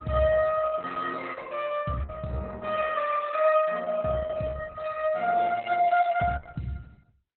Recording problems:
lossy codec; Opus, log-spectral distance 4 dB, nothing above 3.6 kHz

